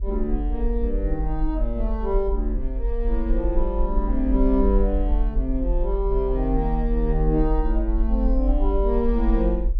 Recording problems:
rumble; below 46 Hz, strongest tone 44 Hz, SNR 0 dB

